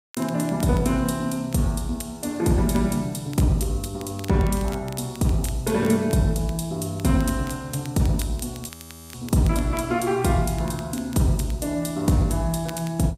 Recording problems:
codec artefacts; Vorbis, log-spectral distance 3 dB, nothing above 13.8 kHz
crackling; vinyl, SNR 21 dB
audio freezing; at 8.5 s

